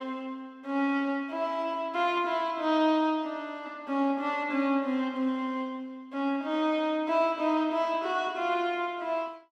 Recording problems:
none

